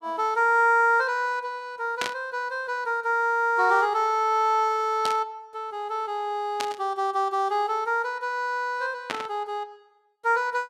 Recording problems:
burst of static; 4 times, first at 2 s; peak +1 dB vs average level

